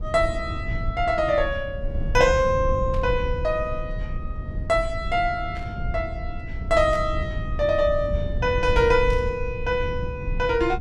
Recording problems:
low-frequency rumble; below 98 Hz, SNR 7 dB
static burst; 4 times, first at 3 s; peak -14 dB vs average level

